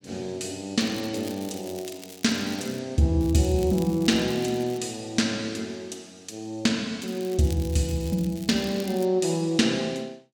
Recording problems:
crackling; from 1 to 3 s, from 3 to 5 s and from 7 to 9 s; loose cable, SNR 18 dB

